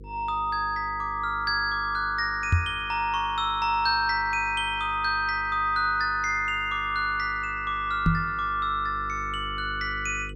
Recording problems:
hum; 50 Hz, harmonics up to 500 Hz, SNR 18 dB
microphone thump; at 2.5 s and at 8 s; peak +7 dB vs average level

